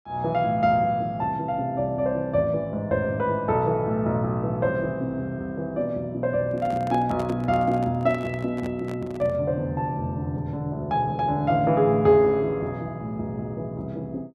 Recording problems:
handling noise; from 6.5 to 9.5 s; peak -7 dB vs average level

